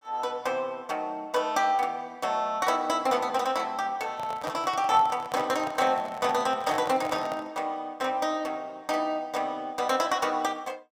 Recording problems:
microphone handling noise; from 4 to 7.5 s; peak -2 dB vs average level

